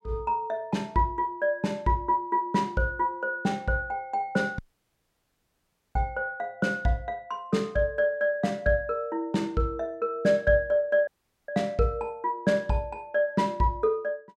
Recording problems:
dropout; at 4.5 s for 1.5 s and at 11 s

